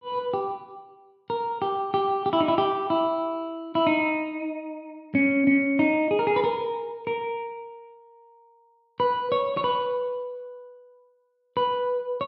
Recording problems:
none

